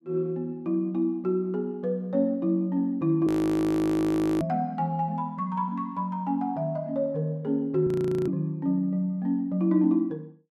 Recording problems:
audio freezing; at 3.5 s for 1 s and at 8 s

